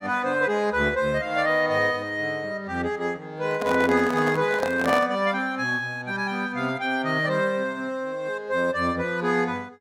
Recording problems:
handling noise; from 3.5 to 5 s; peak 0 dB vs average level

